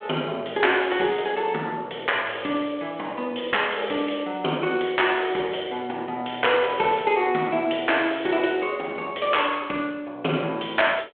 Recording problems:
telephone audio; 280 Hz to 3.4 kHz, G.726

